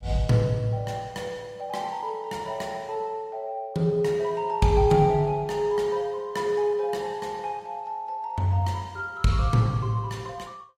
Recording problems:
lossy codec; AAC, log-spectral distance 2 dB, nothing above 15.5 kHz

